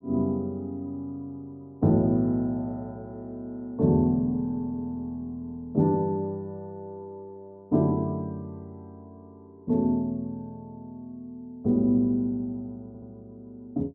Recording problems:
stutter; at 13 s

